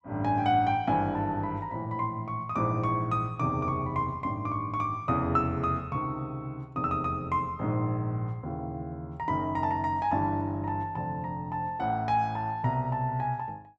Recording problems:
none

